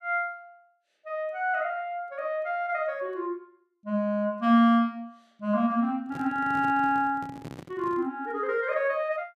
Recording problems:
microphone handling noise; from 6 to 8 s; peak -8 dB vs average level

